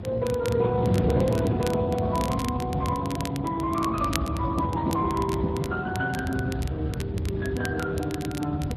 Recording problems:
codec artefacts; AAC, then Speex, log-spectral distance 3 dB
low-frequency rumble; below 120 Hz, SNR 9 dB
wind noise; below 290 Hz, SNR 5 dB
crackling; vinyl, SNR 14 dB

